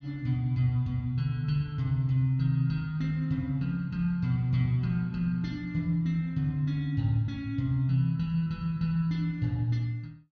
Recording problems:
treble missing; nothing above 7.6 kHz

